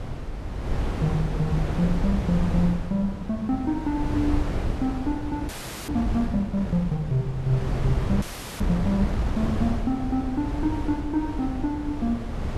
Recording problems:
wind on the microphone; below 220 Hz, SNR 3 dB
frozen audio; at 5.5 s and at 8 s

